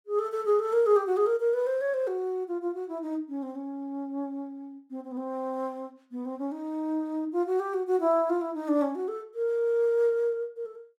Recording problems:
none

